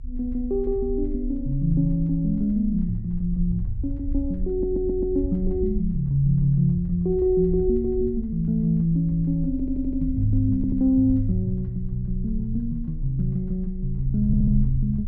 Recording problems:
rumble; below 58 Hz, strongest tone 28 Hz, SNR 9 dB
audio stuttering; 4 times, first at 4.5 s

